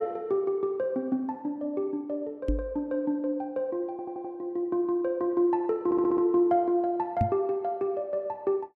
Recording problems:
microphone thump; at 2.5 s and at 7 s; peak +5 dB vs average level
audio stuttering; at 4 s and at 6 s

